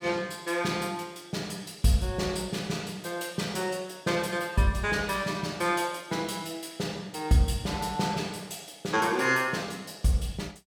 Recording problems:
none

